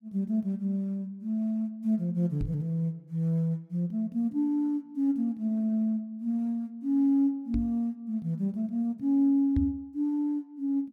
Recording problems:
microphone bump; at 2.5 s, at 7.5 s and at 9.5 s; peak +3 dB vs average level

